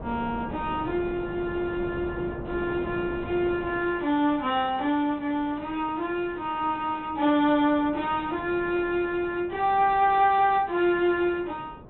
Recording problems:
low-pass filter; nothing above 4 kHz
wind on the microphone; below 530 Hz, SNR 15 dB

